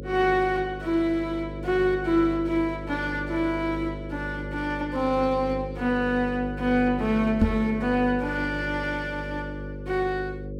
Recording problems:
mains hum; 50 Hz, harmonics up to 550 Hz, SNR 9 dB
microphone thump; at 7.5 s; peak +8 dB vs average level

